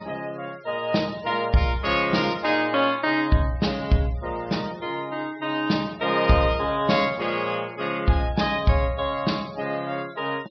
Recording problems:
treble missing; nothing above 5.5 kHz
noise reduction artefacts; signal-to-artefact ratio 23 dB

